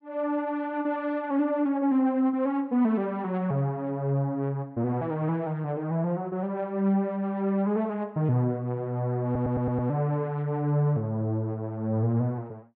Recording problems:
audio stuttering; at 9 s

